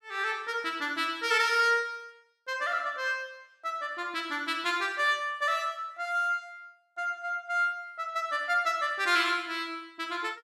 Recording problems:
none

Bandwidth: 13.5 kHz